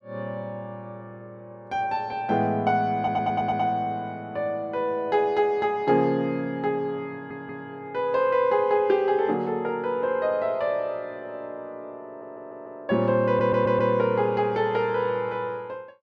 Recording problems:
stutter; 4 times, first at 3 s

